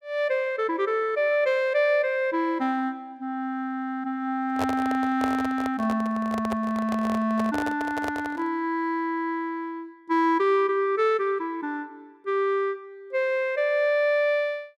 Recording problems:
microphone handling noise; from 4.5 to 8.5 s; peak -1 dB vs average level

